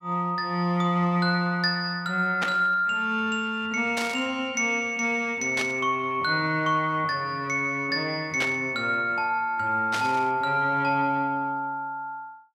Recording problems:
static burst; 5 times, first at 2.5 s; peak 0 dB vs average level

